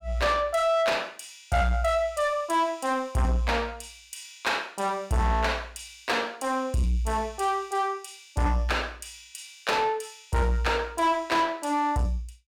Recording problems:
distortion; soft clipping, signal-to-distortion ratio 10 dB

